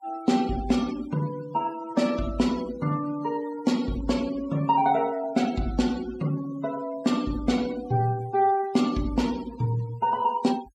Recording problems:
noise reduction artefacts; signal-to-artefact ratio 19 dB

